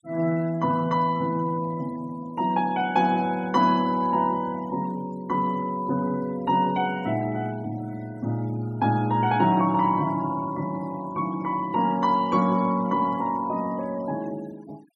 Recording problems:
denoising artefacts; signal-to-artefact ratio 26 dB

